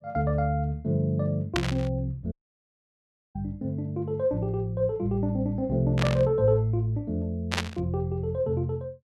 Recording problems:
burst of static; at 1.5 s, at 6 s and at 7.5 s; peak +4 dB vs average level
audio cutting out; at 2.5 s for 1 s

